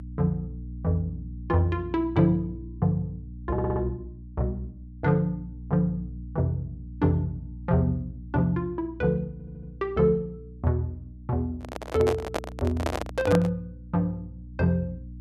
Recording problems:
hum; 60 Hz, harmonics up to 300 Hz, SNR 14 dB
stutter; at 3.5 s and at 9.5 s
microphone handling noise; from 12 to 14 s; peak +3 dB vs average level

